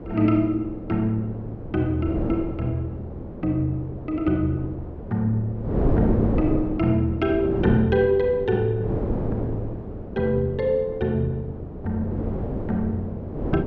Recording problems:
wind on the microphone; below 420 Hz, SNR 6 dB

